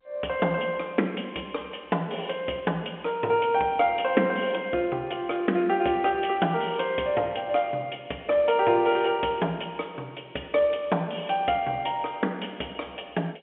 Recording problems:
phone line; 260 Hz to 3.4 kHz, G.711

